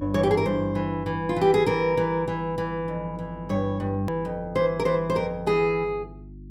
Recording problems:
mains hum; 50 Hz, harmonics up to 350 Hz, SNR 19 dB
edit click; at 4 s

